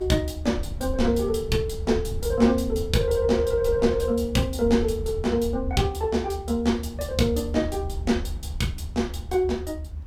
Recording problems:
hiss; slope -7 dB per octave, SNR 29 dB
rumble; below 80 Hz, SNR 8 dB

